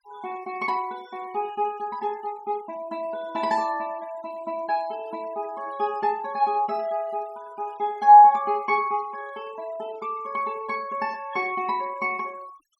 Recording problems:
denoising artefacts; signal-to-artefact ratio 26 dB

